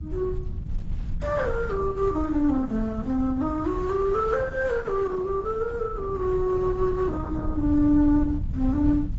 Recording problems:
lossy compression; Opus, then AAC, log-spectral distance 2 dB, nothing above 7.6 kHz
rumble; below 98 Hz, SNR 10 dB

